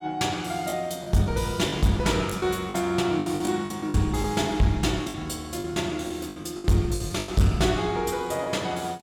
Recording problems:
distortion; hard clipping, signal-to-distortion ratio 12 dB
lost packets; 10% of the sound replaced, filled with the last packet

